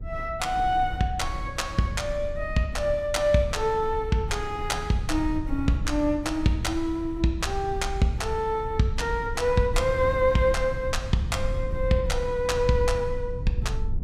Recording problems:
low-frequency rumble; below 80 Hz, SNR 9 dB

